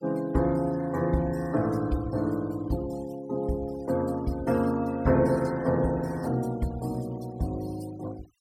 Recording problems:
denoising artefacts; signal-to-artefact ratio 22 dB

